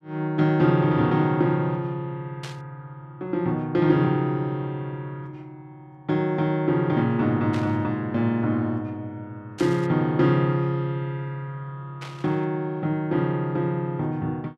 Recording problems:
burst of static; 4 times, first at 2.5 s; peak -9 dB vs average level

